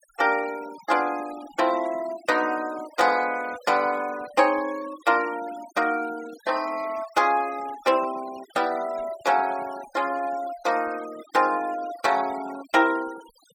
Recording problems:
noise reduction artefacts; signal-to-artefact ratio 18 dB

